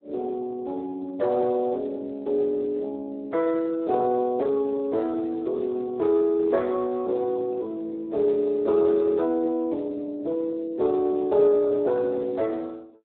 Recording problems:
telephone audio; 300 Hz to 2 kHz, Speex

